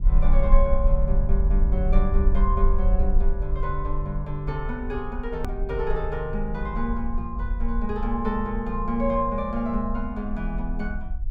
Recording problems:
rumble; below 46 Hz, strongest tone 22 Hz, SNR -1 dB
hard cut with a click; at 5.5 s

